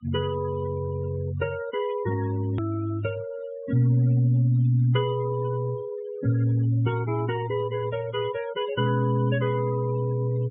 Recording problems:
treble cut off; nothing above 4 kHz
denoising artefacts; signal-to-artefact ratio 17 dB
edit click; at 2.5 s

